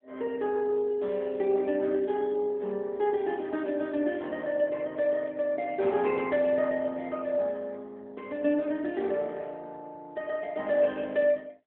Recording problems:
telephone audio; 240 Hz to 3.5 kHz, AMR-NB

